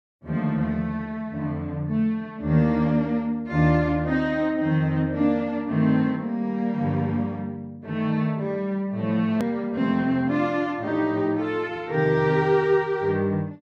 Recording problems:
hard cut with a click; at 9.5 s

